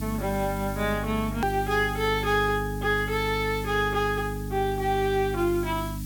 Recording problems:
mains hum; 50 Hz, harmonics up to 300 Hz, SNR 7 dB
background hiss; slope +2 dB per octave, SNR 18 dB
edit click; at 1.5 s

